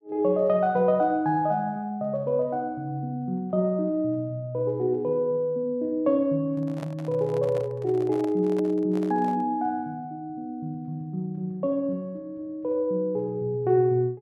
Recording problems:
microphone handling noise; from 6.5 to 9.5 s; peak -9 dB vs average level

